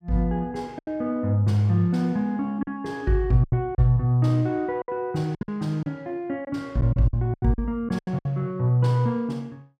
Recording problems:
packet loss; 8% of the sound replaced, filled with silence

